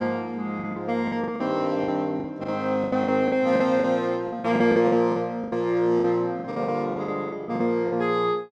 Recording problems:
packet loss; 15% of the sound replaced, filled with the last packet

